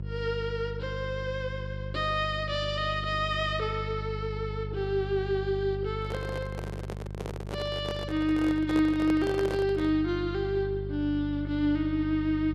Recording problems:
hum; 50 Hz, harmonics up to 400 Hz, SNR 8 dB
handling noise; from 6 to 10 s; peak -2 dB vs average level

